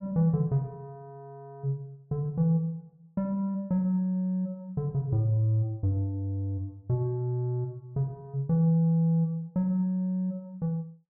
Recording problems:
none

